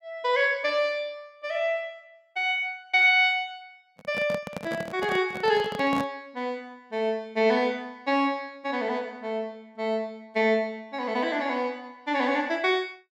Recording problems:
microphone handling noise; from 4 to 6 s; peak -4 dB vs average level

